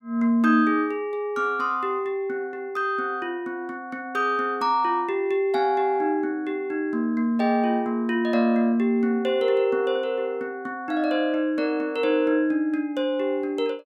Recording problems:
none

